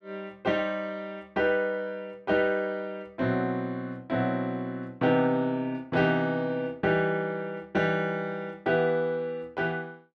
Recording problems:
none

